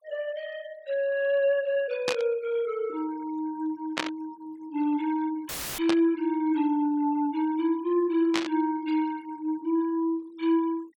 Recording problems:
noise reduction artefacts; signal-to-artefact ratio 25 dB
static burst; 4 times, first at 2 s; peak +3 dB vs average level
dropout; at 5.5 s; filled with static

